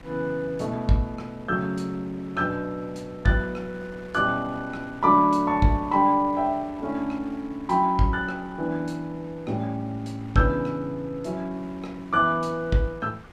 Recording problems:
wind noise; below 1.3 kHz, SNR 22 dB

